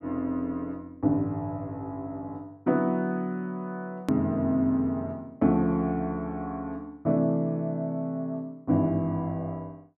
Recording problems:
click at an edit; at 4 s

